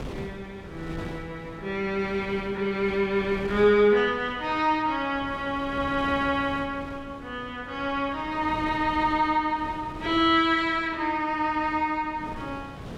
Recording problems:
wind on the microphone; below 540 Hz, SNR 16 dB

